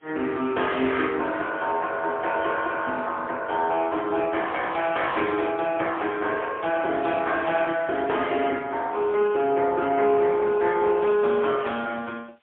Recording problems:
telephone audio; 280 Hz to 3.5 kHz, AMR-NB, then MP3
hiss; SNR 41 dB

